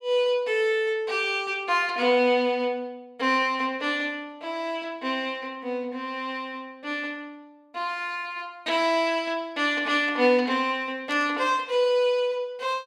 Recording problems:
static burst; at 11 s; peak -13 dB vs average level

